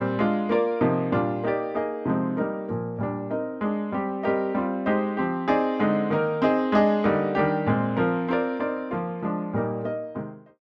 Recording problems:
none

